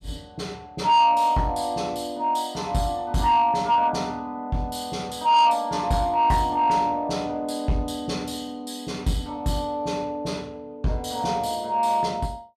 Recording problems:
distorted audio; soft clipping, signal-to-distortion ratio 10 dB

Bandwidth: 14.5 kHz